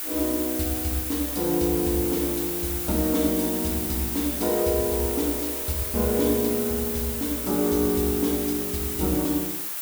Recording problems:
background hiss; SNR 2 dB

